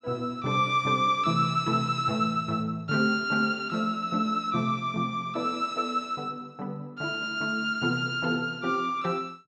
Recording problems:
none

